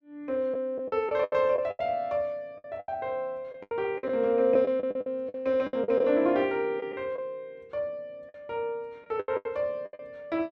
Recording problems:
packet loss; 12% of the sound replaced, filled with the last packet

